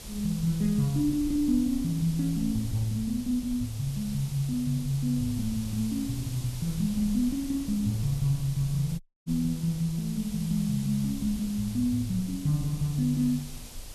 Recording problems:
hiss; SNR 15 dB
rumble; below 80 Hz, SNR 17 dB
dropout; at 9 s

